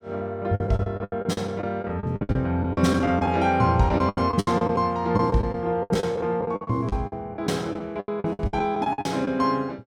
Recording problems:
lost packets; 18% of the sound replaced, filled with the last packet

